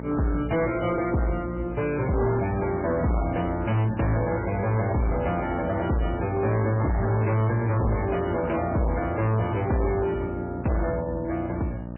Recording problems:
codec artefacts; MP3, log-spectral distance 3 dB, nothing above 3 kHz
distorted audio; hard clipping, signal-to-distortion ratio 7 dB
hum; 60 Hz, harmonics up to 1.3 kHz, SNR 11 dB

